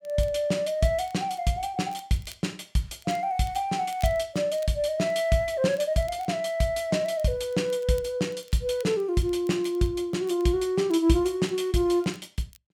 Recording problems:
crackling; vinyl, SNR 27 dB

